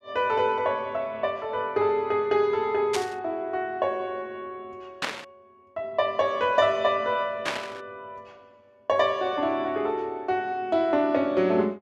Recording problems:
static burst; at 3 s, at 5 s and at 7.5 s; peak +2 dB vs average level

